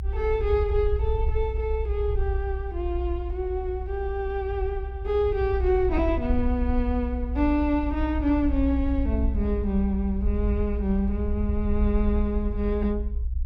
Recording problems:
low-frequency rumble; below 62 Hz, SNR 2 dB

